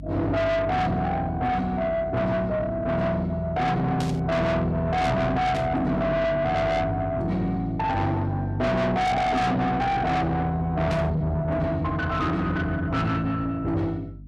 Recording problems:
distorted audio; soft clipping, signal-to-distortion ratio 6 dB
electrical hum; 50 Hz, harmonics up to 300 Hz, SNR 16 dB
static burst; at 4 s, at 5.5 s and at 11 s; peak -6 dB vs average level

